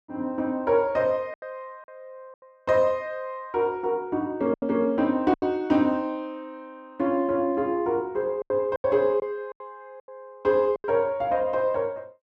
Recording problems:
packet loss; 6% of the sound replaced, filled with silence

